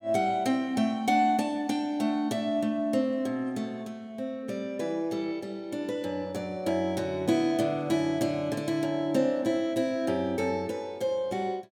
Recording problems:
none

